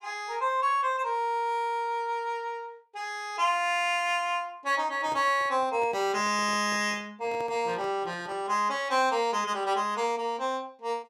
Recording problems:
handling noise; from 5 to 8.5 s; peak -11 dB vs average level

